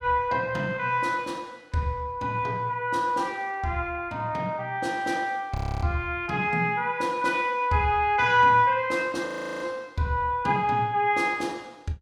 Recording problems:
frozen audio; at 5.5 s and at 9.5 s

